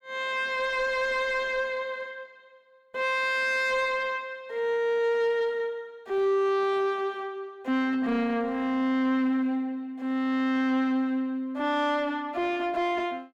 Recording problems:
distortion; soft clipping, signal-to-distortion ratio 11 dB

